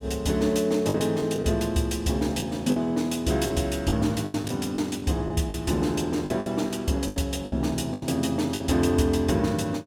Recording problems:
packet loss; 8% of the sound replaced, filled with the last packet

